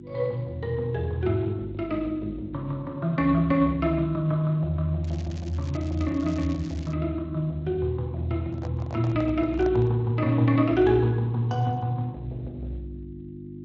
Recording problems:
lossy codec; Speex, log-spectral distance 2 dB, nothing above 6.3 kHz
hum; 50 Hz, harmonics up to 350 Hz, SNR 15 dB
crackle; from 5 to 7 s; loose cable, SNR 23 dB
microphone handling noise; from 8.5 to 10 s; peak -10 dB vs average level

